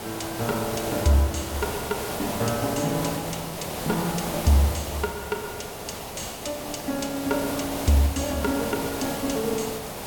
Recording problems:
background hiss; SNR 5 dB

